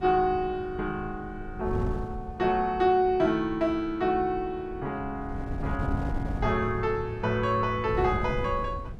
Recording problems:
wind on the microphone; below 160 Hz, SNR 9 dB

